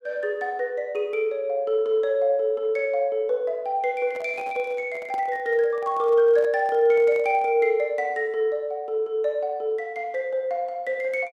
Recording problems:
microphone handling noise; from 4 to 7.5 s; peak -12 dB vs average level

